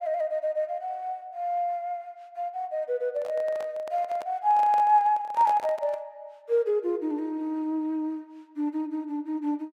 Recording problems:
handling noise; from 3 to 6 s; peak -6 dB vs average level

